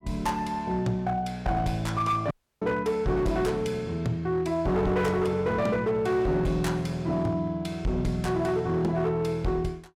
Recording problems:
distorted audio; hard clipping, signal-to-distortion ratio 12 dB
audio cutting out; at 2.5 s

